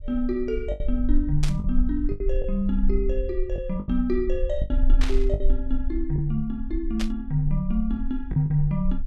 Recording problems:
rumble; below 42 Hz, SNR 3 dB
lost packets; 6% of the sound replaced, filled with the last packet
static burst; at 1.5 s, at 5 s and at 7 s; peak -1 dB vs average level

